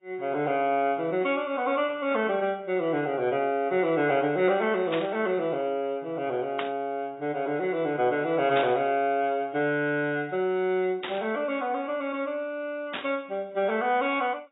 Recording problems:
low-pass filter; nothing above 3.4 kHz
lossy compression; AAC, log-spectral distance 2 dB
static burst; 5 times, first at 5 s; peak -1 dB vs average level

